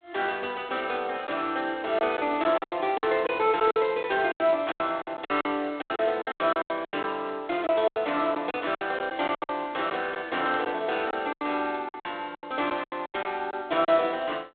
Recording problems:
telephone audio; 260 Hz to 3.7 kHz, G.726
lost packets; 14% of the sound replaced, filled with silence

